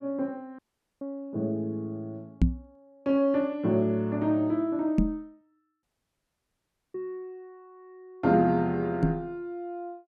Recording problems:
dropout; at 0.5 s and at 6 s for 1 s
knock on the microphone; at 2.5 s, at 5 s and at 9 s; peak +9 dB vs average level

